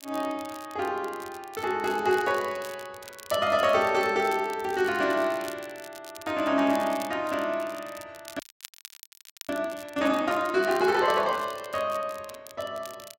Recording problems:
crackle; vinyl, SNR 19 dB
frozen audio; at 8.5 s for 1 s

